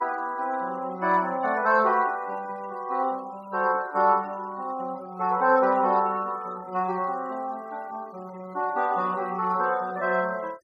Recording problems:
denoising artefacts; signal-to-artefact ratio 26 dB

